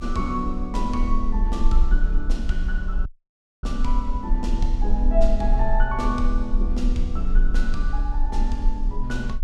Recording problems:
low-frequency rumble; below 38 Hz, strongest tone 28 Hz, SNR -2 dB
audio cutting out; at 3 s for 0.5 s

